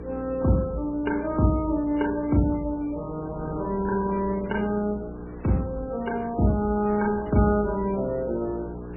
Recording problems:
codec artefacts; MP3, log-spectral distance 3 dB, nothing above 2.9 kHz
hum; 60 Hz, harmonics up to 480 Hz, SNR 13 dB
wind noise; below 830 Hz, SNR 17 dB

